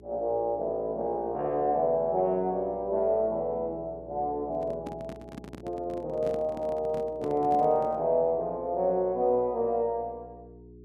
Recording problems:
hum; 60 Hz, harmonics up to 420 Hz, SNR 22 dB
handling noise; from 4.5 to 8 s; peak -8 dB vs average level

